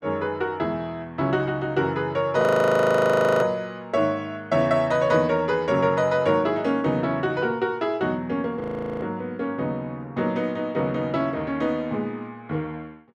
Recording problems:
audio freezing; at 2.5 s for 1 s and at 8.5 s

